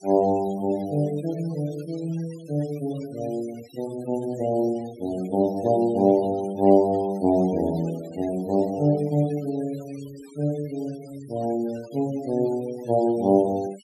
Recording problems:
noise reduction artefacts; signal-to-artefact ratio 23 dB

